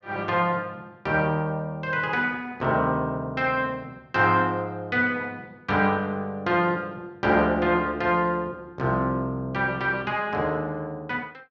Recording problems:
none

